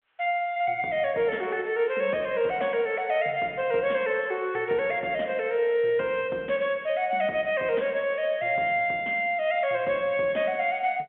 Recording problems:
telephone audio; 240 Hz to 3.5 kHz, G.711

